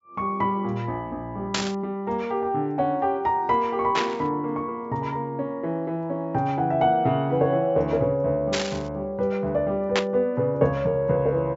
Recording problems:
treble cut off; nothing above 8 kHz
static burst; 4 times, first at 1.5 s; peak +4 dB vs average level

